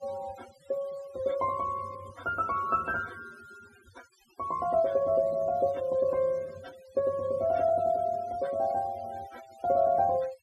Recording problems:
denoising artefacts; signal-to-artefact ratio 23 dB

